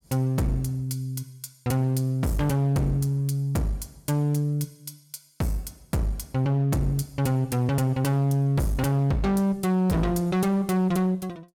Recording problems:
distortion; hard clipping, uneven, signal-to-distortion ratio 9 dB

